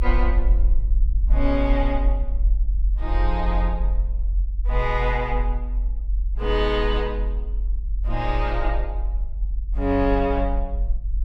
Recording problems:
rumble; below 46 Hz, strongest tone 44 Hz, SNR -1 dB

